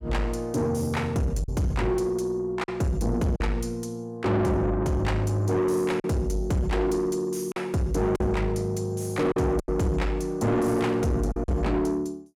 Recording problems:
distorted audio; soft clipping, signal-to-distortion ratio 7 dB
packet loss; 4% of the sound replaced, filled with silence

